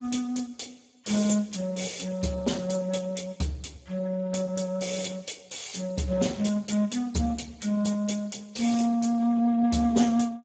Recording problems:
codec artefacts; Speex, log-spectral distance 6 dB, nothing above 7.6 kHz

